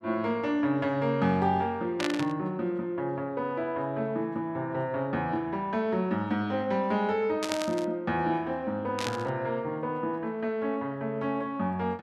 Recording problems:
static burst; at 2 s, at 7.5 s and at 9 s; peak +2 dB vs average level

